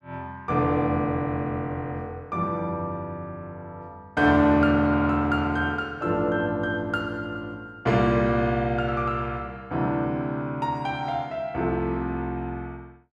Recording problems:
none

